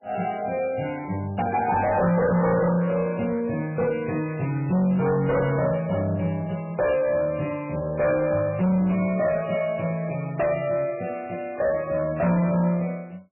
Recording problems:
lossy codec; MP3, log-spectral distance 3 dB, nothing above 2.5 kHz
distortion; soft clipping, signal-to-distortion ratio 7 dB

